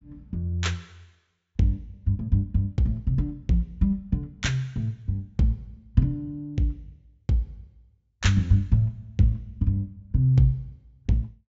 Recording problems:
low-pass filter; nothing above 8 kHz

